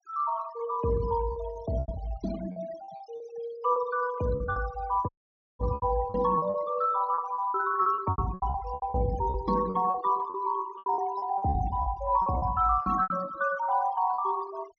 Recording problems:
treble cut off; nothing above 6.5 kHz
denoising artefacts; signal-to-artefact ratio 17 dB
packet loss; 13% of the sound replaced, filled with repeated pitch periods
dropout; at 5 s for 0.5 s

